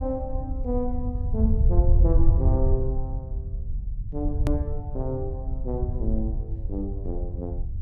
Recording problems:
rumble; below 80 Hz, SNR -4 dB
click at an edit; at 4.5 s

